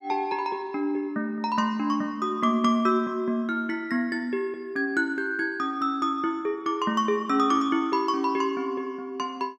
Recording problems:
none

